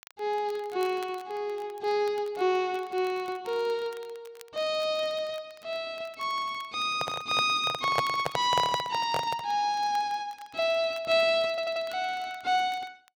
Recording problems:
crackle; vinyl, SNR 26 dB
microphone handling noise; from 7 to 9.5 s; peak +5 dB vs average level
stutter; at 11 s

